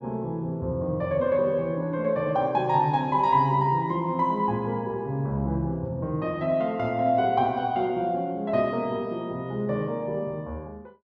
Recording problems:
none

